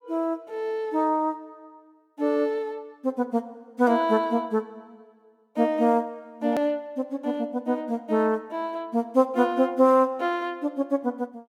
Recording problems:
click at an edit; at 6.5 s

